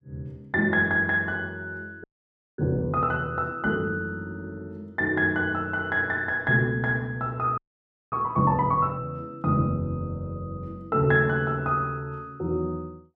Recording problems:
audio freezing; at 2 s for 0.5 s and at 7.5 s for 0.5 s

